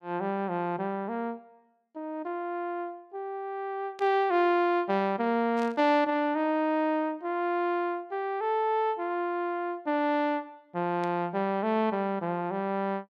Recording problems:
burst of static; at 4 s, at 5.5 s and at 11 s; peak -13 dB vs average level

